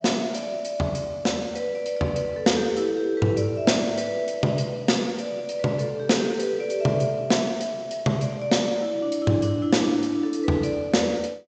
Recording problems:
treble cut off; nothing above 8 kHz

